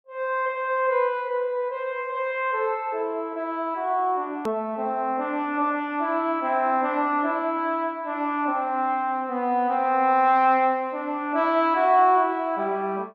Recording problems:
treble cut off; nothing above 8 kHz
hard cut with a click; at 4.5 s

